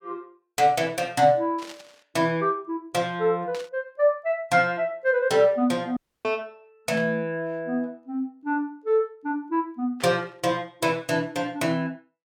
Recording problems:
burst of static; 4 times, first at 1.5 s; peak -10 dB vs average level
audio cutting out; at 6 s

